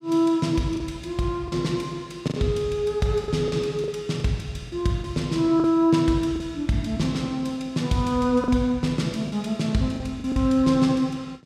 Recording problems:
lost packets; 6% of the sound replaced, filled with the last packet

